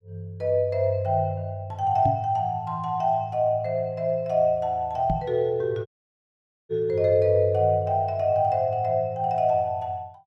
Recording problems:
microphone bump; at 2 s and at 5 s; peak 0 dB vs average level
audio cutting out; at 6 s for 1 s

